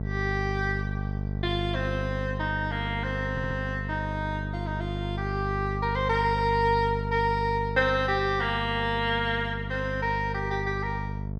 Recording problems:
mains hum; 50 Hz, harmonics up to 700 Hz, SNR 4 dB
audio stuttering; at 3.5 s

